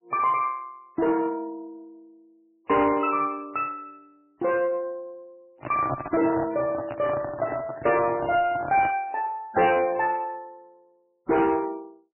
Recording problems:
lossy codec; MP3, log-spectral distance 2 dB, nothing above 2.7 kHz
distorted audio; soft clipping, signal-to-distortion ratio 11 dB
microphone handling noise; from 5.5 to 9 s; peak +1 dB vs average level

